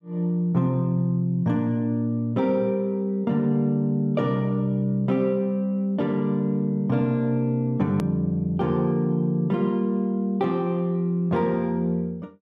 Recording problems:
click at an edit; at 8 s

